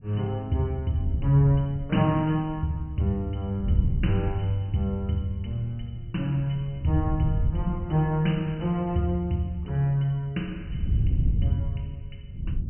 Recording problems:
treble cut off; nothing above 3 kHz
wind on the microphone; below 110 Hz, SNR 5 dB

